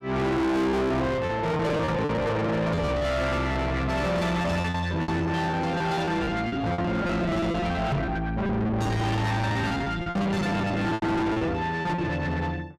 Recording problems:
distortion; soft clipping, signal-to-distortion ratio 6 dB
lost packets; 17% of the sound replaced, filled with repeated pitch periods
knock on the microphone; at 5 s and at 8 s; peak +4 dB vs average level

